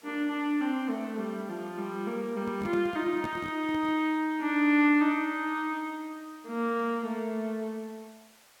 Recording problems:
hiss; SNR 27 dB
handling noise; from 2.5 to 4 s; peak -5 dB vs average level

